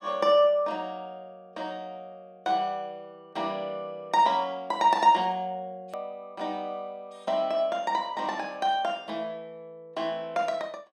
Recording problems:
hard cut with a click; at 6 s

